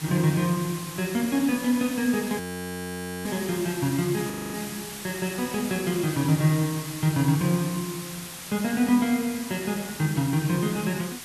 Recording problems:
hiss; SNR 10 dB
audio freezing; at 2.5 s for 1 s and at 4.5 s

